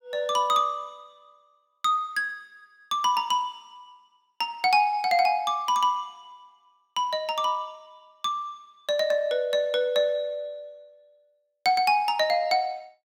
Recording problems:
none

